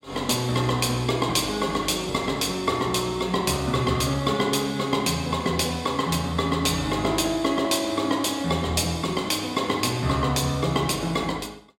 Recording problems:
none

